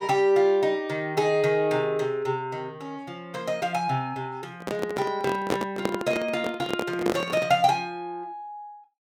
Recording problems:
handling noise; from 4.5 to 7.5 s; peak +4 dB vs average level

